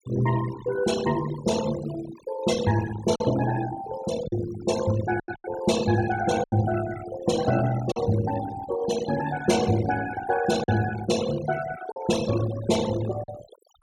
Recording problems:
noise reduction artefacts; signal-to-artefact ratio 12 dB
lost packets; 4% of the sound replaced, filled with silence

